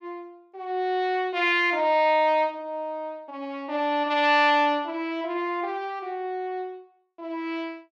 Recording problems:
none

